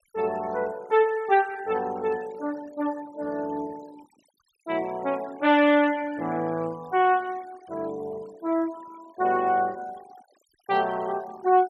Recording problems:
noise reduction artefacts; signal-to-artefact ratio 23 dB

